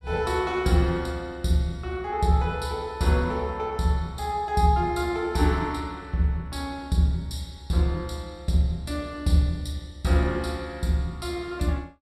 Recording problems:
none

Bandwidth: 15 kHz